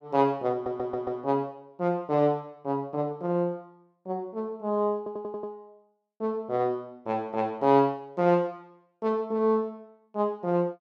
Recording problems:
stutter; at 0.5 s and at 5 s

